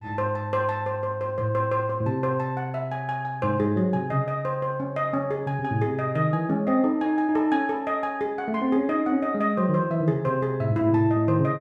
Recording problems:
none

